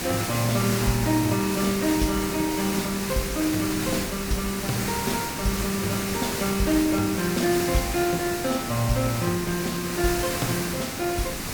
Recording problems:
background hiss; slope -2 dB per octave, SNR 3 dB
wind on the microphone; below 220 Hz, SNR 20 dB

